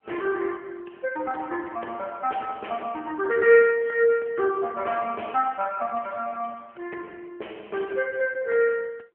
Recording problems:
telephone audio; 320 Hz to 3.3 kHz, AMR-NB

